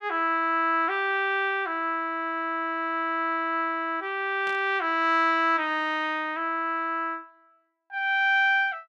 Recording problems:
static burst; at 4.5 s; peak -14 dB vs average level

